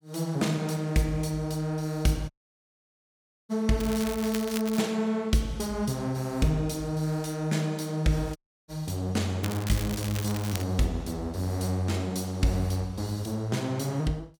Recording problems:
audio cutting out; at 2.5 s for 1 s and at 8.5 s
crackling; from 4 to 5 s and from 9.5 to 11 s; loose cable, SNR 10 dB

